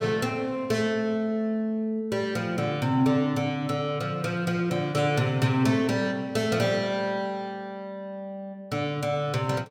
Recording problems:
none

